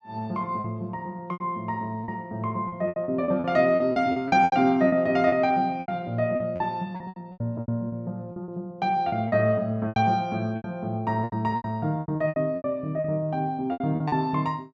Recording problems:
packet loss; 15% of the sound replaced, filled with repeated pitch periods

